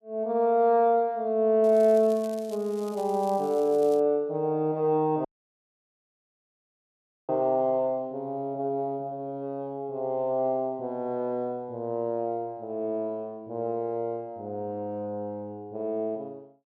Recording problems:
crackling; from 1.5 to 4 s; loose cable, SNR 24 dB
audio cutting out; at 5.5 s for 2 s

